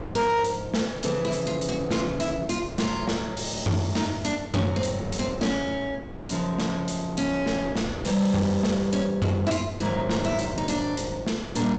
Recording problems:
lossy compression; G.722, log-spectral distance 5 dB, nothing above 7.6 kHz
distorted audio; soft clipping, signal-to-distortion ratio 11 dB
wind on the microphone; below 530 Hz, SNR 12 dB

